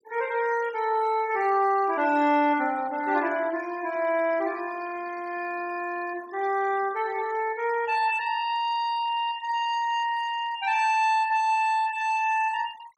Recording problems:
denoising artefacts; signal-to-artefact ratio 20 dB

